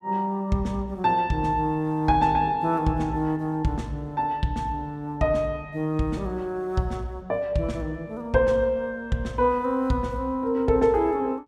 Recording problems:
none

